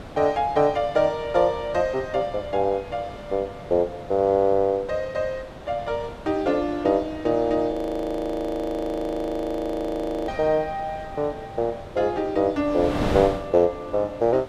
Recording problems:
wind on the microphone; below 780 Hz, SNR 13 dB
frozen audio; at 7.5 s for 2.5 s

